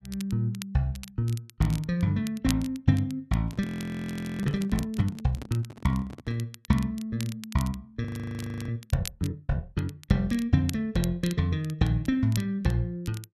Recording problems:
crackle; vinyl, SNR 17 dB
microphone handling noise; from 3.5 to 6.5 s; peak -7 dB vs average level
frozen audio; at 3.5 s for 0.5 s and at 8 s for 0.5 s

